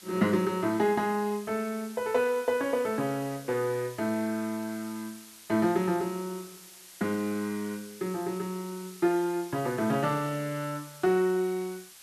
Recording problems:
hiss; slope +2 dB per octave, SNR 18 dB

